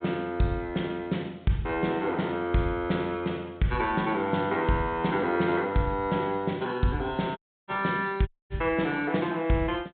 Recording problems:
treble missing; nothing above 4 kHz
audio cutting out; at 7.5 s and at 8.5 s

